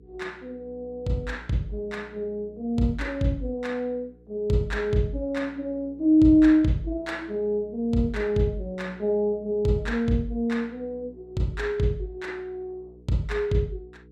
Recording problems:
electrical hum; 60 Hz, harmonics up to 480 Hz, SNR 25 dB

